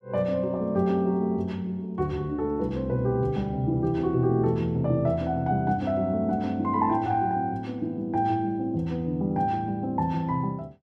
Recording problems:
none

